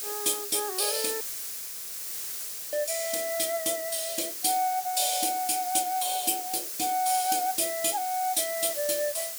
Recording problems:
hiss; SNR 6 dB
audio cutting out; at 1 s for 1.5 s

